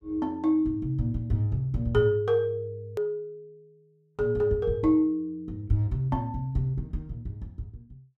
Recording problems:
hard cut with a click; at 3 s

